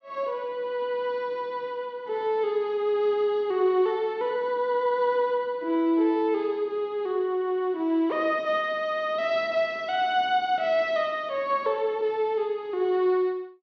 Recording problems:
none

